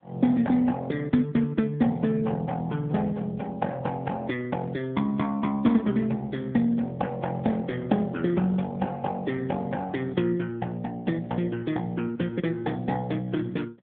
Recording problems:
telephone audio; 150 Hz to 3.5 kHz, AMR-NB

